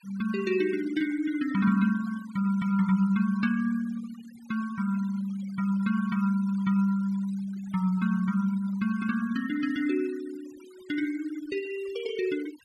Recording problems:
denoising artefacts; signal-to-artefact ratio 20 dB

